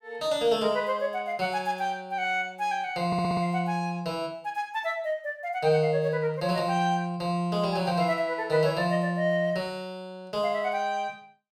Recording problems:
audio stuttering; at 3 s

